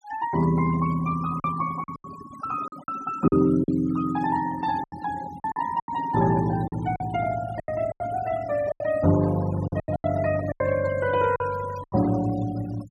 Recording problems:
noise reduction artefacts; signal-to-artefact ratio 17 dB
lost packets; 10% of the sound replaced, filled with silence

